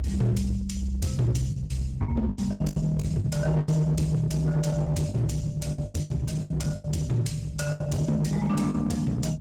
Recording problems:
lossy codec; Opus, log-spectral distance 3 dB, nothing above 18.3 kHz
distortion; hard clipping, signal-to-distortion ratio 11 dB
low-frequency rumble; below 120 Hz, strongest tone 66 Hz, SNR 7 dB
wind on the microphone; below 210 Hz, SNR 19 dB
lost packets; 13% of the sound replaced, filled with the last packet

